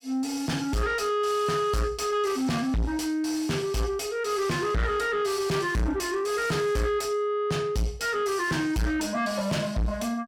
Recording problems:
distorted audio; soft clipping, signal-to-distortion ratio 6 dB

